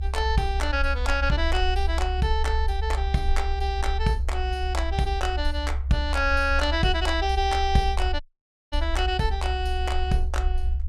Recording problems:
low-frequency rumble; below 68 Hz, SNR 2 dB
dropout; at 8 s for 0.5 s

